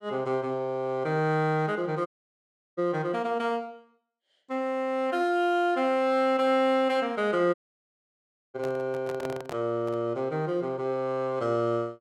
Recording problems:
audio cutting out; at 2 s for 0.5 s and at 7.5 s for 1 s
microphone handling noise; from 8.5 to 10 s; peak -6 dB vs average level

